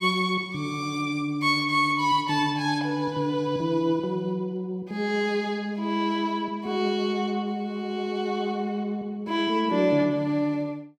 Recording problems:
none

